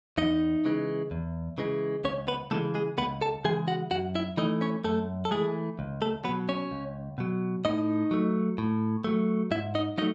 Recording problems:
none

